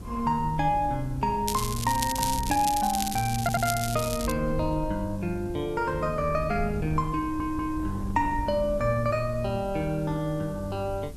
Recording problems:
hum; 50 Hz, harmonics up to 400 Hz, SNR 18 dB
hiss; SNR 27 dB
wind noise; below 98 Hz, SNR 12 dB
crackle; from 1.5 to 4.5 s; loose cable, SNR 6 dB
stutter; at 3.5 s and at 7 s

